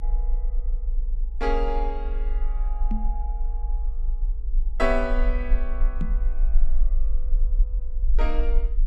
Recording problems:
low-frequency rumble; below 40 Hz, strongest tone 28 Hz, SNR -3 dB
microphone bump; at 3 s and at 6 s; peak +3 dB vs average level

